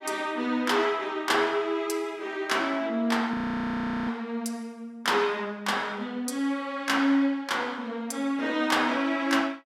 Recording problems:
frozen audio; at 3.5 s for 0.5 s

